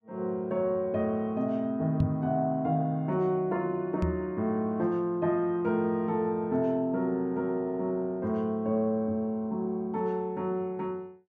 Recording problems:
microphone thump; at 2 s and at 4 s; peak +4 dB vs average level

